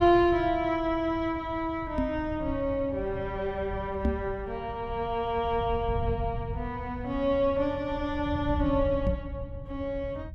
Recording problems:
low-frequency rumble; below 120 Hz, SNR 10 dB
microphone thump; at 2 s, at 4 s and at 9 s; peak +5 dB vs average level

